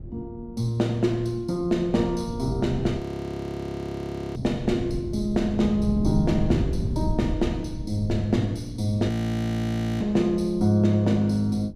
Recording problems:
wind on the microphone; below 180 Hz, SNR 7 dB
frozen audio; at 3 s for 1.5 s and at 9 s for 1 s

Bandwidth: 14.5 kHz